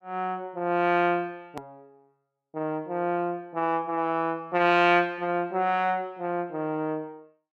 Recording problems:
hard cut with a click; at 1.5 s

